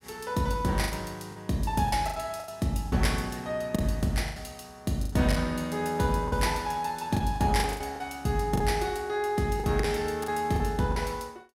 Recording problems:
lost packets; 10% of the sound replaced, filled with the last packet

